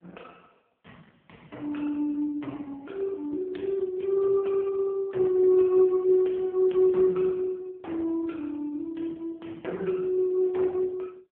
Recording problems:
telephone audio; 220 Hz to 2.5 kHz, AMR-NB

